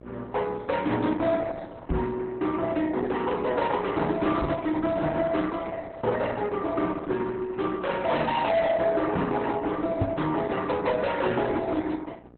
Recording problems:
lossy codec; Opus, then Opus, log-spectral distance 3 dB, nothing above 4 kHz
distorted audio; soft clipping, signal-to-distortion ratio 12 dB
electrical hum; 60 Hz, harmonics up to 1.2 kHz, SNR 23 dB
microphone bump; at 2 s, at 4.5 s and at 10 s; peak +4 dB vs average level

